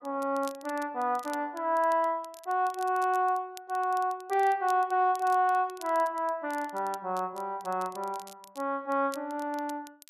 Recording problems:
crackle; vinyl, SNR 22 dB

